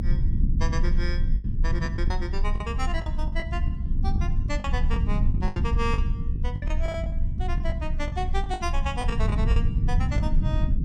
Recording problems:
rumble; below 82 Hz, strongest tone 24 Hz, SNR -7 dB
lost packets; 9% of the sound replaced, filled with the last packet

